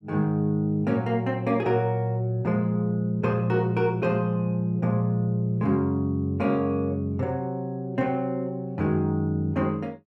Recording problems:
none

